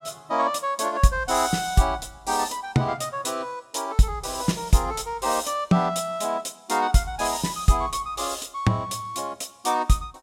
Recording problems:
none

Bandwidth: 16 kHz